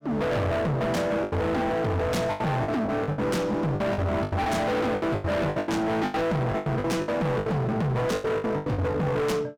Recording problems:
distortion; hard clipping, signal-to-distortion ratio 6 dB
lost packets; 15% of the sound replaced, filled with the last packet

